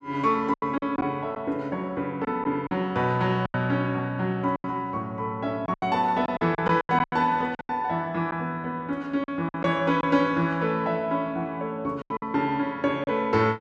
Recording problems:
lost packets; 9% of the sound replaced, filled with silence

